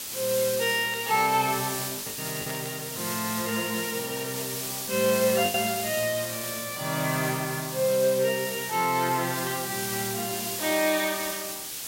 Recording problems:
background hiss; SNR 4 dB
packet loss; 2% of the sound replaced, filled with the last packet
burst of static; 4 times, first at 1 s; peak -8 dB vs average level

